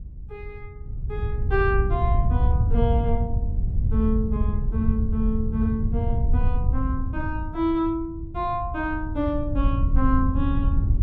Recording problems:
wind on the microphone; below 88 Hz, SNR -2 dB

